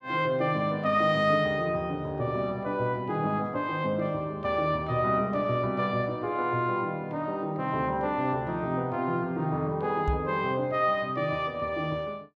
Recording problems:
knock on the microphone; at 10 s; peak +2 dB vs average level

